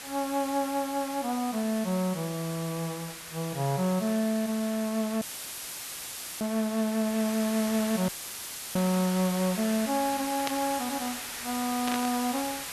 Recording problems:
hiss; slope +1 dB per octave, SNR 8 dB
dropout; at 5 s for 1 s and at 8 s for 0.5 s; filled with static
static burst; at 10 s and at 12 s; peak -1 dB vs average level

